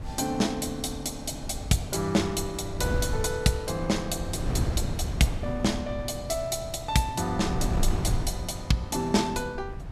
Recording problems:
wind on the microphone; below 140 Hz, SNR 6 dB

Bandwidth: 14.5 kHz